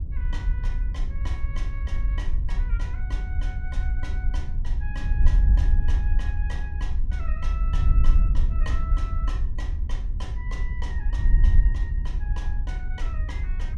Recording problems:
wind on the microphone; below 62 Hz, SNR -15 dB

